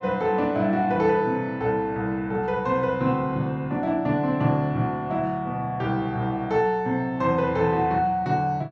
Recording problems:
none

